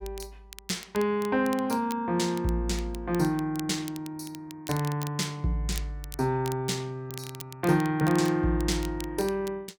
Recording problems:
crackling; vinyl, SNR 17 dB

